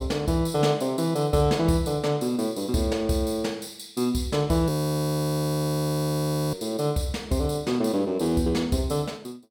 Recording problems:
frozen audio; at 4.5 s for 2 s

